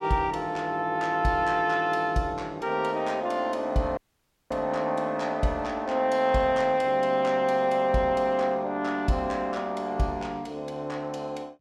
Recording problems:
dropout; at 4 s for 0.5 s

